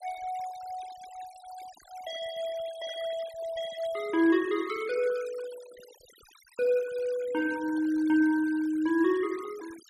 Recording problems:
denoising artefacts; signal-to-artefact ratio 20 dB

